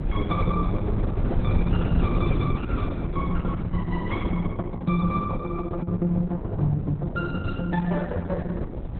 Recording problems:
codec artefacts; AAC, then Opus, log-spectral distance 3 dB, nothing above 3.7 kHz
low-frequency rumble; below 150 Hz, SNR 4 dB

